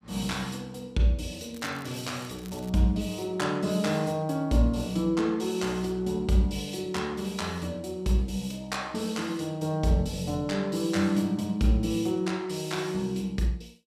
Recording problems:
crackling; from 1.5 to 2.5 s; loose cable, SNR 22 dB

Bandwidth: 15 kHz